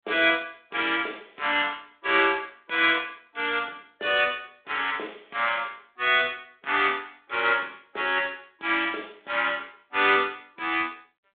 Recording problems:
phone line; 300 Hz to 3.7 kHz, G.726

